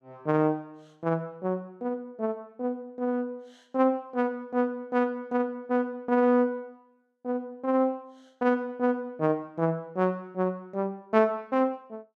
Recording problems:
none

